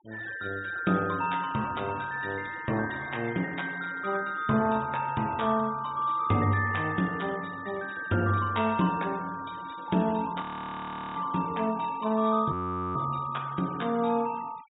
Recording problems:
low-pass filter; nothing above 4 kHz
noise reduction artefacts; signal-to-artefact ratio 21 dB
audio freezing; at 10 s for 0.5 s and at 13 s

